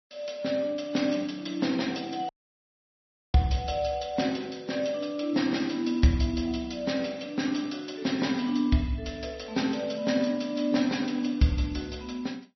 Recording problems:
codec artefacts; MP3, log-spectral distance 5 dB, nothing above 5.8 kHz
audio cutting out; at 2.5 s for 1 s

